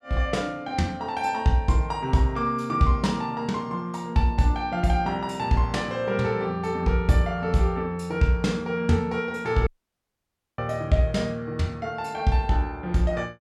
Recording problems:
dropout; at 9.5 s for 1 s

